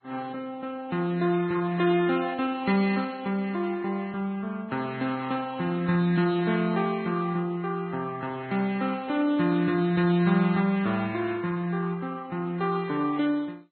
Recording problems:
lossy codec; Vorbis, then MP2, log-spectral distance 2 dB, nothing above 4 kHz

